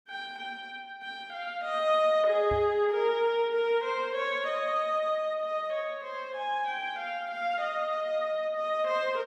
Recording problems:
microphone bump; at 2.5 s; peak -5 dB vs average level

